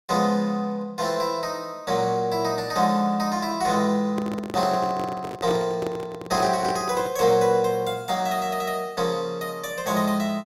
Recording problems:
handling noise; from 4 to 7.5 s; peak -2 dB vs average level

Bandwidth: 16.5 kHz